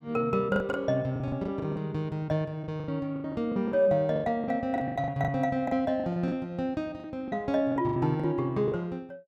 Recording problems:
lost packets; 15% of the sound replaced, filled with the last packet

